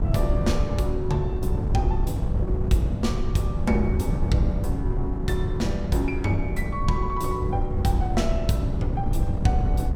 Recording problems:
wind on the microphone; below 110 Hz, SNR 0 dB

